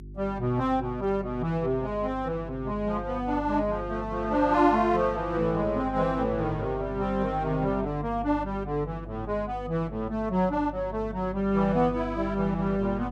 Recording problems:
electrical hum; 50 Hz, harmonics up to 400 Hz, SNR 13 dB

